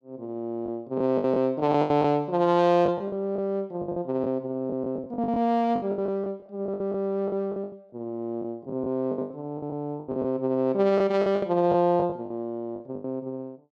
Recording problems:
packet loss; 14% of the sound replaced, filled with the last packet

